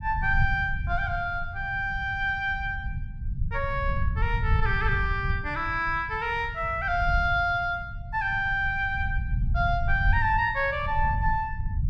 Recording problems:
rumble; below 98 Hz, SNR 5 dB

